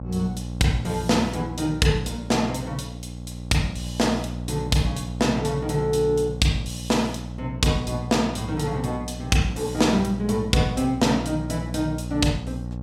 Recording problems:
hum; 60 Hz, harmonics up to 840 Hz, SNR 9 dB

